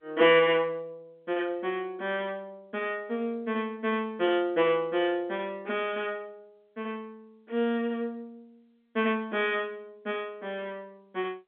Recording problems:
phone line; 170 Hz to 3.4 kHz, G.711

